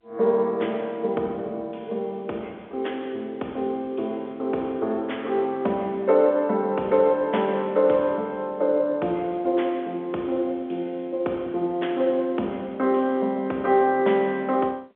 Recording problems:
telephone audio; 280 Hz to 3.4 kHz, G.711

